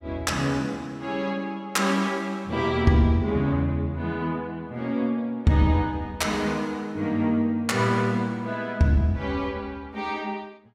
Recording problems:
none

